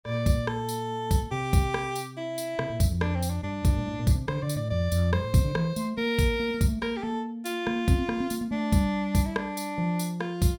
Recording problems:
none

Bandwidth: 17 kHz